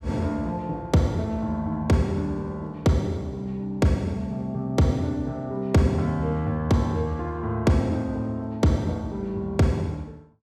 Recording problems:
none

